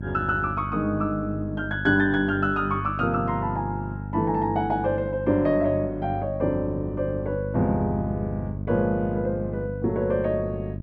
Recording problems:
electrical hum; 50 Hz, harmonics up to 400 Hz, SNR 8 dB

